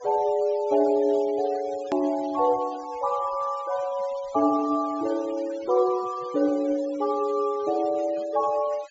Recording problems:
treble cut off; nothing above 8 kHz
denoising artefacts; signal-to-artefact ratio 22 dB
click at an edit; at 2 s

